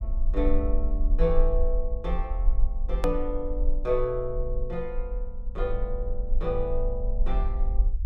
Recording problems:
low-frequency rumble; below 42 Hz, strongest tone 24 Hz, SNR -1 dB
edit click; at 3 s

